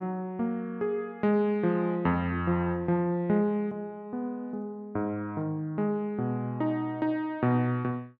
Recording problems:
none

